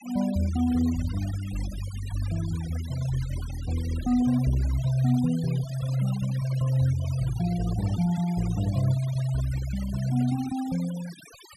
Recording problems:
denoising artefacts; signal-to-artefact ratio 17 dB

